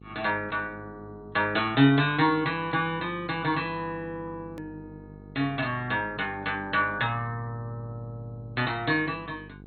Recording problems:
codec artefacts; MP2, log-spectral distance 3 dB, nothing above 4 kHz
mains hum; 50 Hz, harmonics up to 850 Hz, SNR 20 dB
hard cut with a click; at 4.5 s

